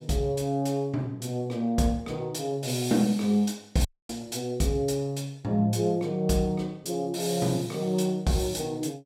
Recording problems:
dropout; at 4 s

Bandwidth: 16 kHz